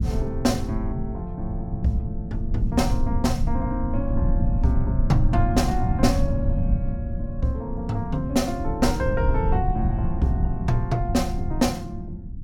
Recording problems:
rumble; below 100 Hz, SNR 1 dB

